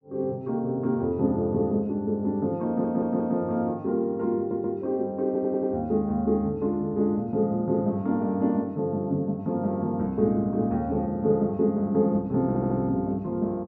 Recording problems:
audio stuttering; 4 times, first at 2.5 s

